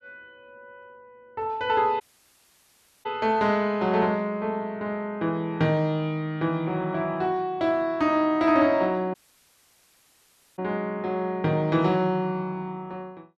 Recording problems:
dropout; at 2 s for 1 s and at 9 s for 1.5 s

